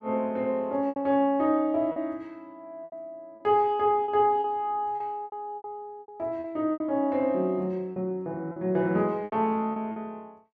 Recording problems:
packet loss; 9% of the sound replaced, filled with repeated pitch periods

